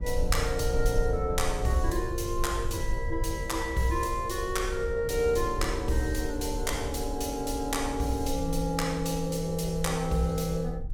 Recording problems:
low-frequency rumble; below 68 Hz, SNR 6 dB

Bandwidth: 17.5 kHz